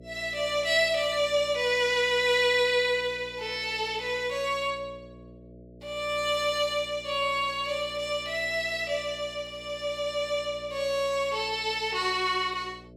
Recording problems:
electrical hum; 60 Hz, harmonics up to 660 Hz, SNR 22 dB

